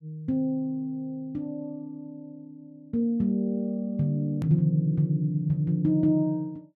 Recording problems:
click at an edit; at 4.5 s

